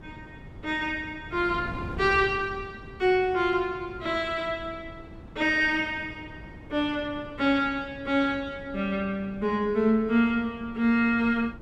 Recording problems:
wind noise; below 310 Hz, SNR 17 dB

